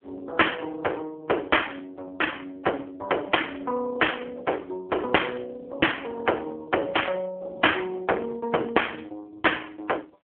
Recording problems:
telephone audio; 280 Hz to 3.3 kHz, AMR-NB

